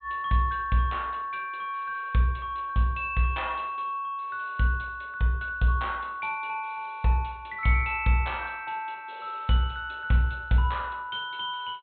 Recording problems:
low-pass filter; nothing above 4 kHz

